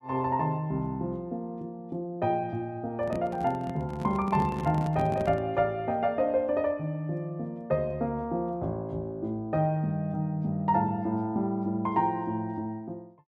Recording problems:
microphone handling noise; from 3 to 5.5 s; peak -1 dB vs average level

